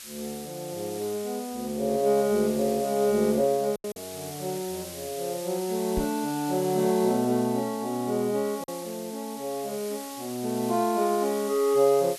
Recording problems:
hiss; slope +3 dB per octave, SNR 13 dB
packet loss; 1.3% of the sound replaced, filled with silence
microphone bump; at 6 s; peak -2 dB vs average level

